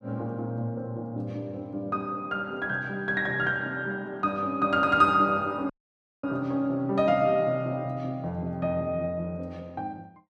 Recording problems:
audio cutting out; at 5.5 s for 0.5 s

